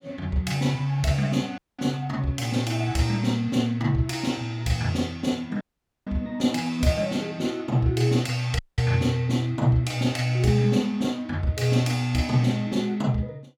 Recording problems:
audio cutting out; at 1.5 s, at 5.5 s and at 8.5 s

